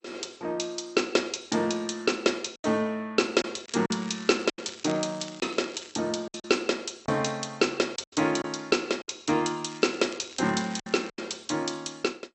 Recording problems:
codec artefacts; MP2, log-spectral distance 8 dB, nothing above 8 kHz
packet loss; 6% of the sound replaced, filled with silence
crackling; from 3.5 to 6 s and from 9.5 to 11 s; loose cable, SNR 19 dB

